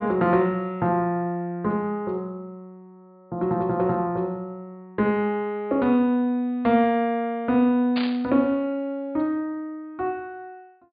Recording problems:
treble cut off; nothing above 4.8 kHz
static burst; at 8 s; peak -3 dB vs average level

